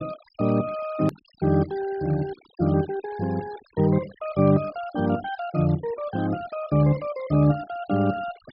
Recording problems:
low-pass filter; nothing above 5.5 kHz
denoising artefacts; signal-to-artefact ratio 21 dB
hard cut with a click; at 1 s

